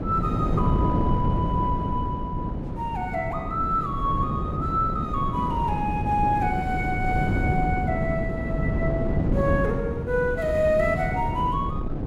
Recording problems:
wind noise; below 270 Hz, SNR 1 dB

